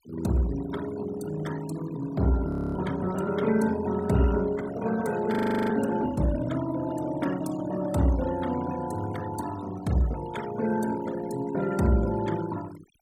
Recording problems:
denoising artefacts; signal-to-artefact ratio 15 dB
frozen audio; at 2.5 s and at 5.5 s

